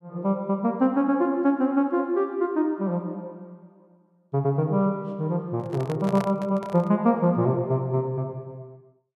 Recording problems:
handling noise; from 5.5 to 7 s; peak -5 dB vs average level

